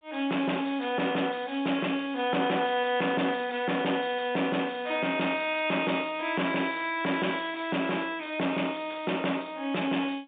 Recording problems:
phone line; 240 Hz to 3.6 kHz, G.711
distortion; soft clipping, signal-to-distortion ratio 8 dB

